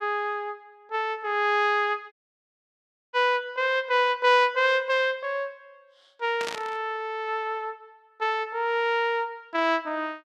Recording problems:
audio cutting out; at 2 s for 1 s
burst of static; at 6.5 s; peak -3 dB vs average level

